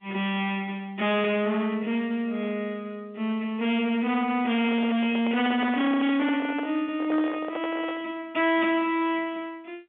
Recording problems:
telephone audio; 150 Hz to 3.6 kHz, G.711
distortion; hard clipping, signal-to-distortion ratio 8 dB
handling noise; from 4.5 to 8 s; peak -3 dB vs average level

